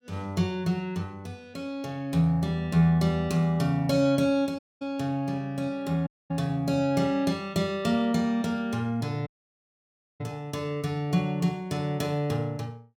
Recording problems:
audio cutting out; at 4.5 s, at 6 s and at 9.5 s for 1 s

